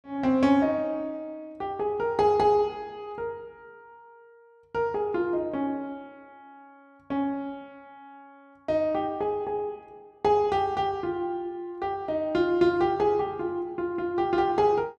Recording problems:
none

